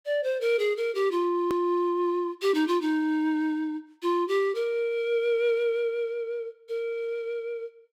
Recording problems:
click at an edit; at 1.5 s

